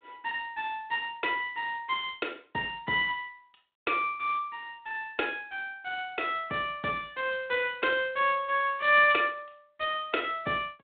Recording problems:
telephone audio; 260 Hz to 3.7 kHz, G.726

